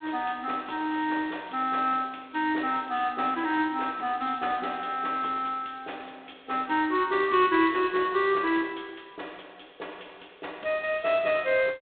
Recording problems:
telephone audio; 280 Hz to 3.9 kHz, G.726

